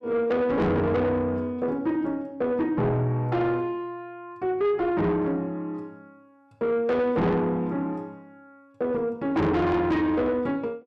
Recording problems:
distorted audio; soft clipping, signal-to-distortion ratio 7 dB

